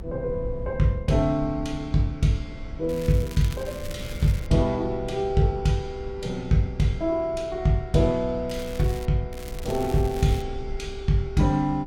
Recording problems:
low-frequency rumble; below 64 Hz, strongest tone 22 Hz, SNR 15 dB
wind on the microphone; below 200 Hz, SNR 18 dB
crackling; from 3 to 4.5 s, at 8.5 s and from 9.5 to 10 s; loose cable, SNR 18 dB

